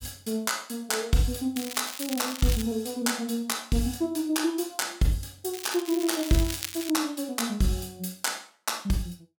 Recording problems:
crackle; from 1.5 to 2.5 s and from 5.5 to 7 s; loose cable, SNR 8 dB

